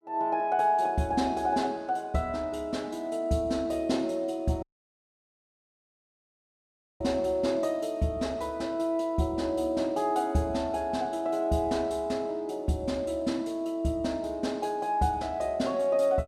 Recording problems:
dropout; at 4.5 s for 2.5 s

